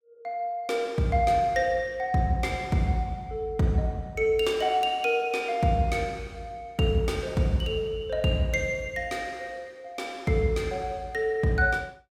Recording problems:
none

